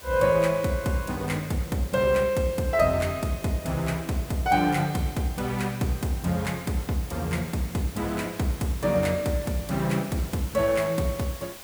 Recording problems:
hiss; slope -2 dB per octave, SNR 16 dB

